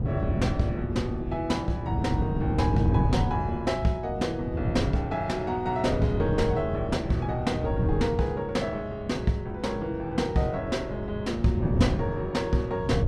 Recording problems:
wind noise; below 200 Hz, SNR 2 dB

